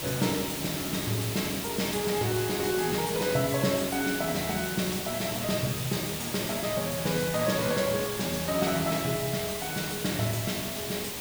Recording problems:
hiss; SNR 4 dB

